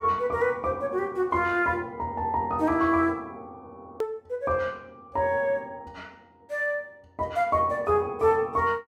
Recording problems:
hard cut with a click; at 4 s

